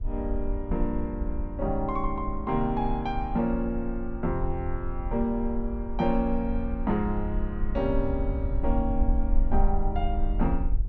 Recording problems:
rumble; below 54 Hz, strongest tone 20 Hz, SNR 3 dB

